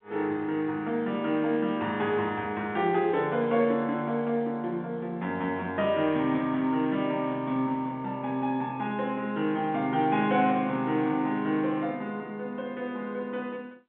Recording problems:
telephone audio; 150 Hz to 3.6 kHz, G.711

